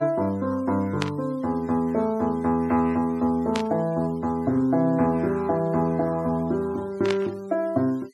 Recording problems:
noise reduction artefacts; signal-to-artefact ratio 27 dB
static burst; at 1 s, at 3.5 s and at 7 s; peak 0 dB vs average level

